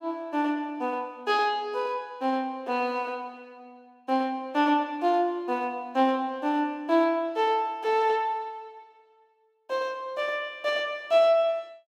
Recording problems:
none

